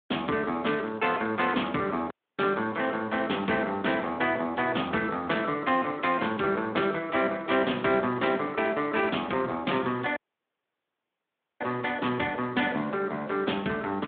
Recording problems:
telephone audio; 220 Hz to 3.6 kHz, Speex
audio cutting out; at 2 s and at 10 s for 1.5 s

